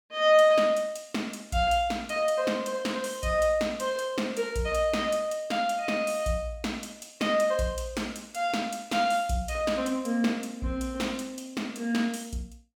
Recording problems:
none

